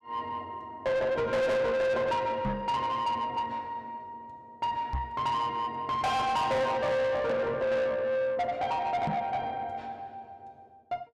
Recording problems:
distorted audio; soft clipping, signal-to-distortion ratio 8 dB
knock on the microphone; at 2.5 s, at 5 s and at 9 s; peak +1 dB vs average level

